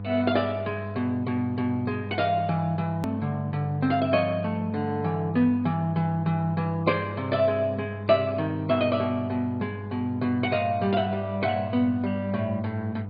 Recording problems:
treble missing; nothing above 4.4 kHz
lossy codec; MP2, log-spectral distance 2 dB
hum; 50 Hz, harmonics up to 1 kHz, SNR 9 dB
hard cut with a click; at 3 s

